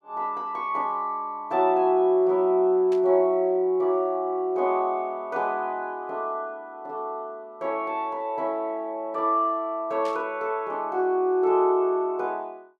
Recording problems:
burst of static; at 3 s and at 10 s; peak -14 dB vs average level

